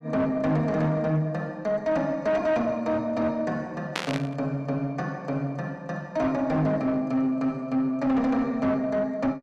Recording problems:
distorted audio; soft clipping, signal-to-distortion ratio 11 dB
static burst; at 4 s; peak +2 dB vs average level

